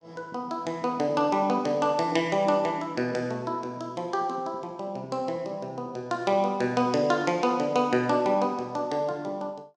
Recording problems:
none

